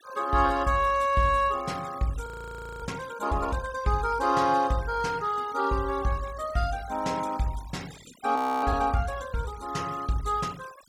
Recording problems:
noise reduction artefacts; signal-to-artefact ratio 21 dB
audio freezing; at 2.5 s for 0.5 s and at 8.5 s

